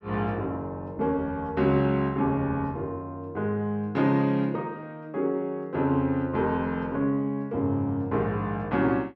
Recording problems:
none

